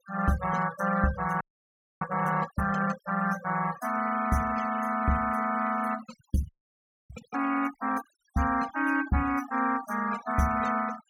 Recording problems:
denoising artefacts; signal-to-artefact ratio 16 dB
frozen audio; at 1.5 s for 0.5 s and at 6.5 s for 0.5 s

